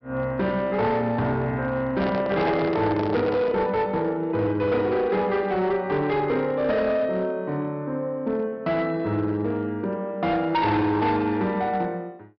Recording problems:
low-pass filter; nothing above 5.5 kHz
distorted audio; hard clipping, signal-to-distortion ratio 11 dB
microphone handling noise; from 2 to 3.5 s; peak 0 dB vs average level

